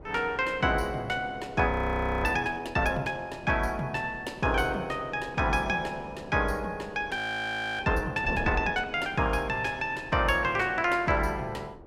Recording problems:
wind on the microphone; below 540 Hz, SNR 18 dB
audio freezing; at 1.5 s for 0.5 s and at 7 s for 0.5 s

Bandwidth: 16.5 kHz